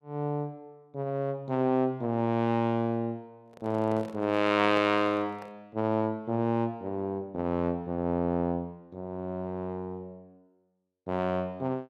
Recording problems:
handling noise; from 3.5 to 5.5 s; peak -8 dB vs average level

